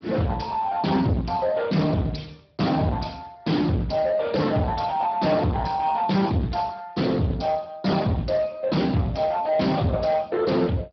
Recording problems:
treble missing; nothing above 5.3 kHz
lossy codec; Speex, log-spectral distance 4 dB
distortion; soft clipping, signal-to-distortion ratio 7 dB

